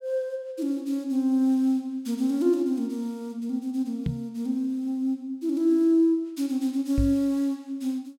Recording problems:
knock on the microphone; at 4 s and at 7 s; peak +3 dB vs average level

